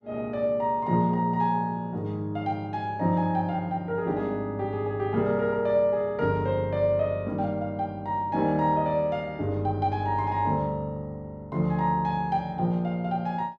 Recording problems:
none

